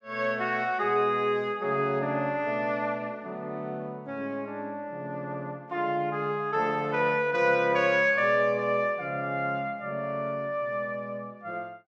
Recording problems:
none

